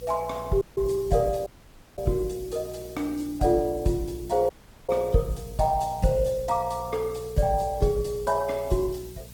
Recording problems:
lossy compression; Opus, log-spectral distance 4 dB, nothing above 18.3 kHz
hum; 60 Hz, harmonics up to 660 Hz, SNR 18 dB
background hiss; slope +2 dB per octave, SNR 24 dB
audio cutting out; at 0.5 s, at 1.5 s for 0.5 s and at 4.5 s

